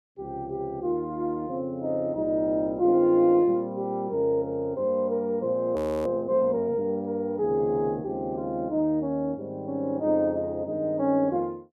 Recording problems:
audio freezing; at 6 s

